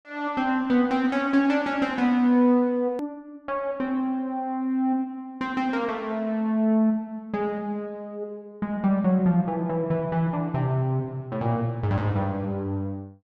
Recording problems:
click at an edit; at 3 s

